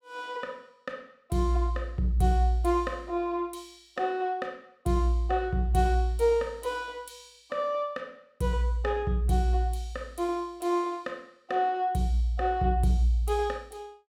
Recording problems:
none

